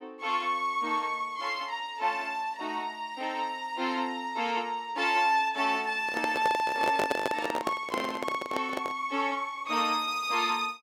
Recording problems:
handling noise; from 6 to 9 s; peak +4 dB vs average level

